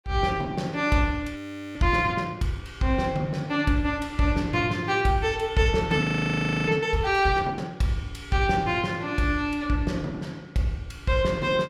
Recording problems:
audio freezing; at 1.5 s and at 6 s for 0.5 s

